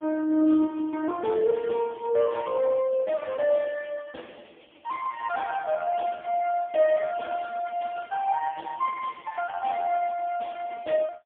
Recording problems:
telephone audio; 260 Hz to 3.1 kHz, AMR-NB, then MP3

